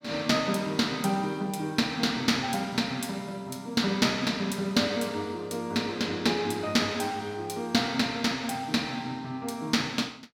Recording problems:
none

